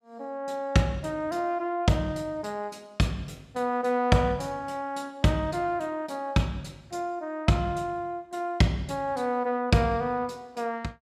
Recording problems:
none

